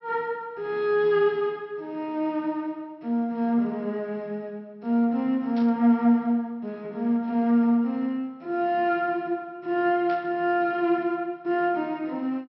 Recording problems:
treble missing; nothing above 5.7 kHz
static burst; at 5.5 s and at 10 s; peak -14 dB vs average level

